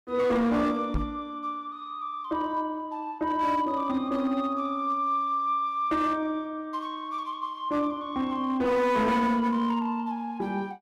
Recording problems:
distortion; hard clipping, signal-to-distortion ratio 11 dB
microphone bump; at 1 s; peak +2 dB vs average level

